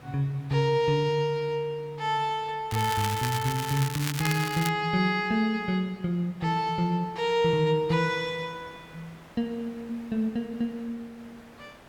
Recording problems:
background hiss; SNR 24 dB
crackling; from 2.5 to 4.5 s; loose cable, SNR 7 dB

